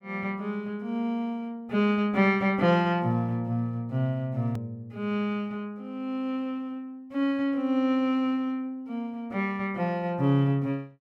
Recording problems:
hard cut with a click; at 4.5 s

